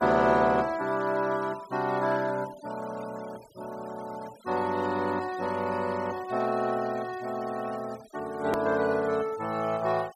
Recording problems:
noise reduction artefacts; signal-to-artefact ratio 20 dB
edit click; at 8.5 s

